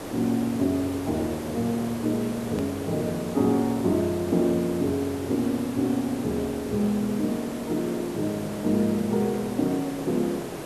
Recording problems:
hiss; slope -7 dB per octave, SNR 9 dB
click at an edit; at 2.5 s

